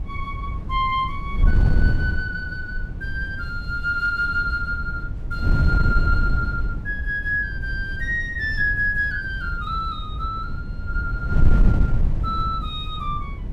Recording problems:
wind on the microphone; below 90 Hz, SNR 0 dB

